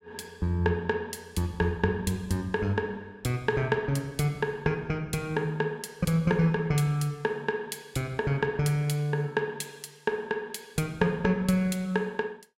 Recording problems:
none

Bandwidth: 16 kHz